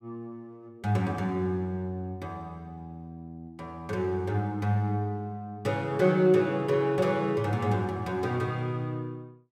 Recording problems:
none

